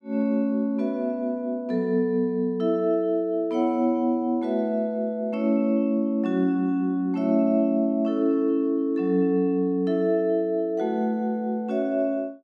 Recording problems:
none

